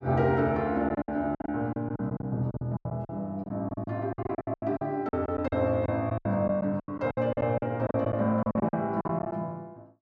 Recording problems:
packet loss; 17% of the sound replaced, filled with silence

